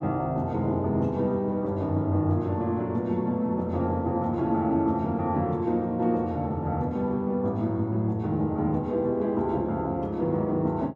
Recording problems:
none

